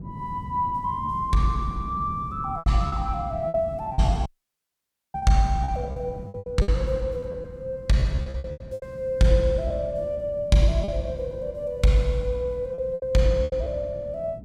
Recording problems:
wind noise; below 210 Hz, SNR 14 dB
lost packets; 10% of the sound replaced, filled with repeated pitch periods
audio cutting out; at 4.5 s for 1 s

